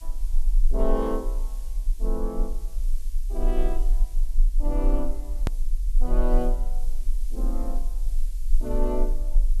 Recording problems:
hiss; slope +5 dB per octave, SNR 20 dB
rumble; below 34 Hz, strongest tone 20 Hz, SNR -3 dB
click at an edit; at 5.5 s

